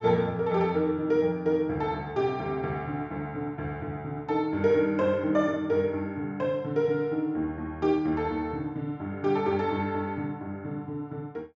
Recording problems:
treble missing; nothing above 7.4 kHz

